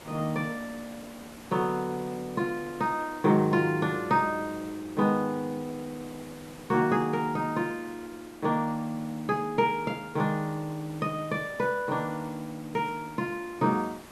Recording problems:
background hiss; slope -5 dB per octave, SNR 18 dB

